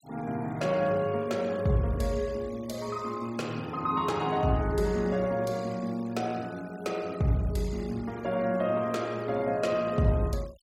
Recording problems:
denoising artefacts; signal-to-artefact ratio 23 dB

